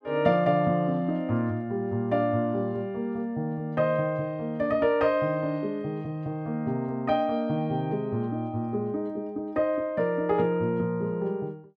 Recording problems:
none

